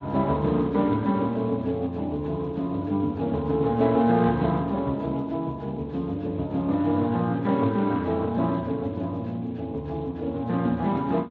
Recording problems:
lossy codec; Speex, log-spectral distance 2 dB

